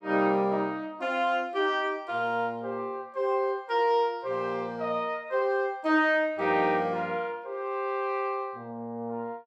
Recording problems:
none

